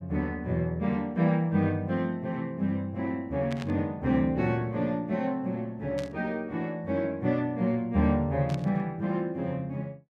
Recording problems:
static burst; at 3.5 s, at 6 s and at 8.5 s; peak -7 dB vs average level

